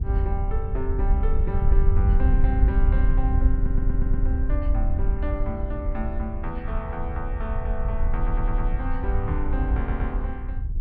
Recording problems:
treble cut off; nothing above 5.5 kHz
wind on the microphone; below 64 Hz, SNR -7 dB
audio stuttering; at 3.5 s, at 8 s and at 10 s

